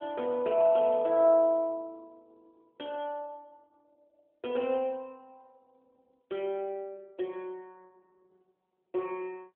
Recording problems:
phone line; 280 Hz to 3.5 kHz, AMR-NB

